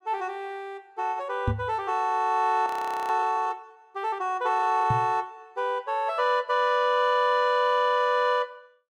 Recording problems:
knock on the microphone; at 1.5 s and at 5 s; peak +2 dB vs average level
frozen audio; at 2.5 s

